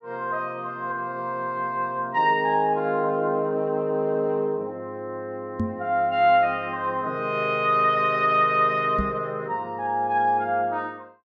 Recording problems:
knock on the microphone; at 5.5 s and at 9 s; peak +1 dB vs average level

